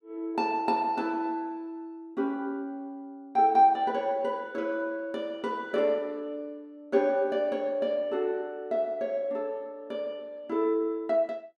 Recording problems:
none

